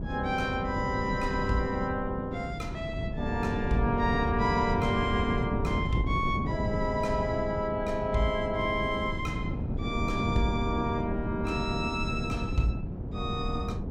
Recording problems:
wind on the microphone; below 240 Hz, SNR 3 dB

